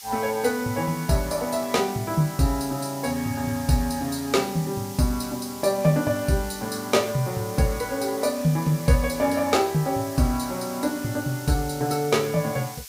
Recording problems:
hiss; slope +6 dB per octave, SNR 14 dB

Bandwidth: 15.5 kHz